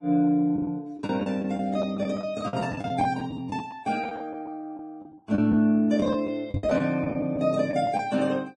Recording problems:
lossy codec; Vorbis, log-spectral distance 2 dB
lost packets; 12% of the sound replaced, filled with the last packet
microphone bump; at 6.5 s; peak +1 dB vs average level

